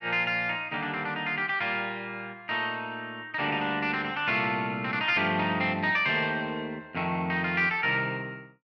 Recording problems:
none

